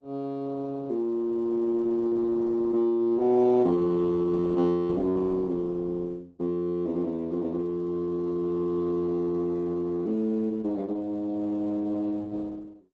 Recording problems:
lossy compression; Opus, log-spectral distance 2 dB

